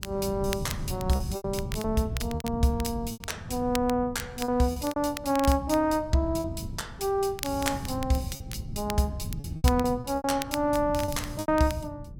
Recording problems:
wind noise; below 160 Hz, SNR 10 dB
crackle; vinyl, SNR 13 dB
lost packets; 9% of the sound replaced, filled with repeated pitch periods

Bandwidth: 17 kHz